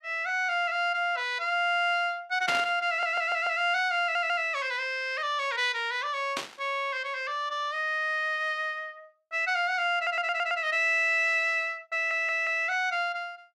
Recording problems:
static burst; at 2.5 s and at 6.5 s; peak +1 dB vs average level
stutter; 4 times, first at 3 s

